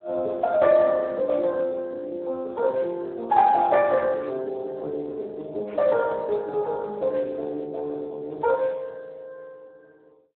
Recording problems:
telephone audio; 320 Hz to 2.3 kHz, Speex

